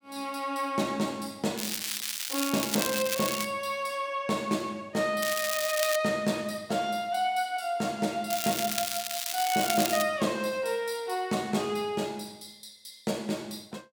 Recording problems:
crackling; from 1.5 to 3.5 s, at 5 s and from 8.5 to 10 s; loose cable, SNR 2 dB

